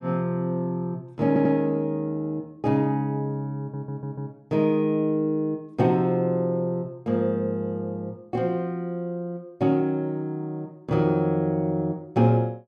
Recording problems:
stutter; at 1.5 s and at 3.5 s

